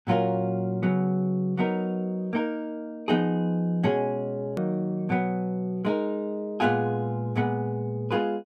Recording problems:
hard cut with a click; at 4.5 s

